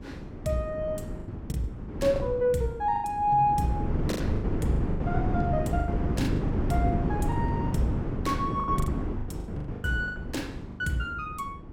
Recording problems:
wind noise; below 280 Hz, SNR 1 dB
lost packets; 12% of the sound replaced, filled with the last packet

